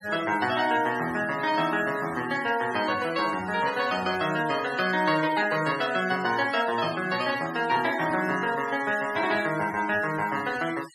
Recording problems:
noise reduction artefacts; signal-to-artefact ratio 14 dB

